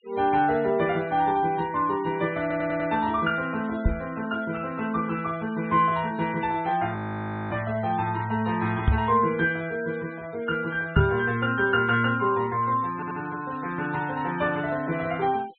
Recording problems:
treble missing; nothing above 4 kHz
noise reduction artefacts; signal-to-artefact ratio 21 dB
stutter; at 2.5 s and at 13 s
microphone bump; at 4 s, at 9 s and at 11 s; peak +8 dB vs average level
frozen audio; at 7 s for 0.5 s

